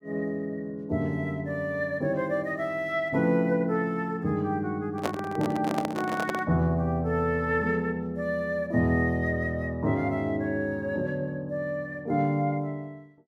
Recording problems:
handling noise; from 5 to 6.5 s; peak +2 dB vs average level

